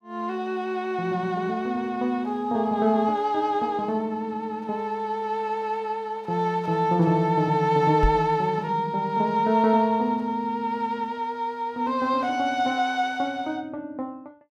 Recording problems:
microphone bump; at 8 s; peak +4 dB vs average level

